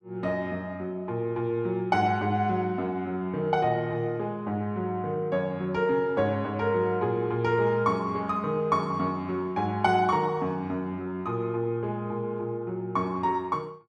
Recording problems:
none

